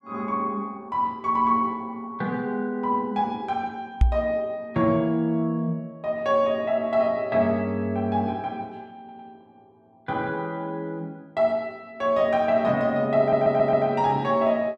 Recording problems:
microphone bump; at 4 s; peak +8 dB vs average level
audio stuttering; at 9 s and at 13 s

